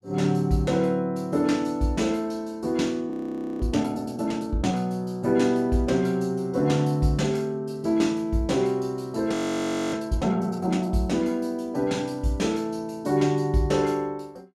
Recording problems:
audio freezing; at 3 s for 0.5 s and at 9.5 s for 0.5 s

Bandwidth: 14.5 kHz